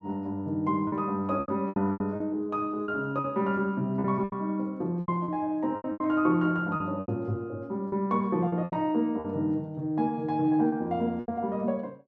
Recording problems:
lost packets; 10% of the sound replaced, filled with repeated pitch periods

